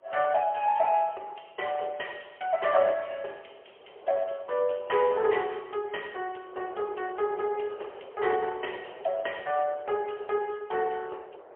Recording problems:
telephone audio; 340 Hz to 3.2 kHz, AMR-NB, then MP3
wind on the microphone; below 770 Hz, SNR 20 dB

